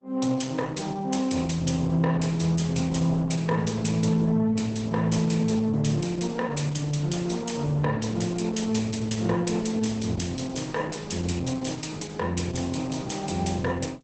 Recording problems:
lossy compression; Opus, log-spectral distance 4 dB, nothing above 8.2 kHz

